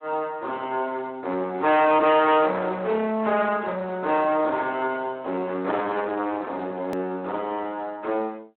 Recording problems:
telephone audio; 240 Hz to 3.6 kHz, Speex
distorted audio; soft clipping, signal-to-distortion ratio 9 dB
edit click; at 7 s

